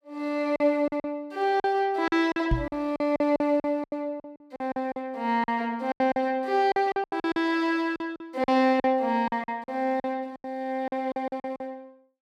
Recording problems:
lost packets; 15% of the sound replaced, filled with silence
microphone bump; at 2.5 s; peak +4 dB vs average level

